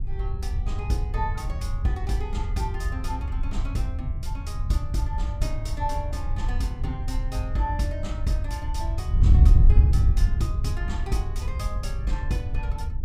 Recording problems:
wind on the microphone; below 80 Hz, SNR -6 dB

